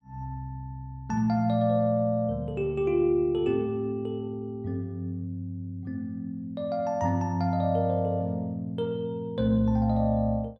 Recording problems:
none

